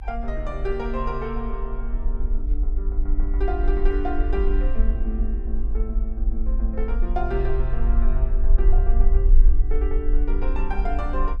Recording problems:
rumble; below 48 Hz, SNR -6 dB

